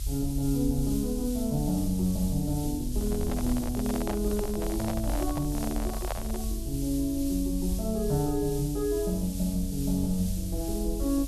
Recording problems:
background hiss; slope +5 dB per octave, SNR 11 dB
low-frequency rumble; below 60 Hz, strongest tone 46 Hz, SNR 7 dB
handling noise; from 3 to 6.5 s; peak 0 dB vs average level

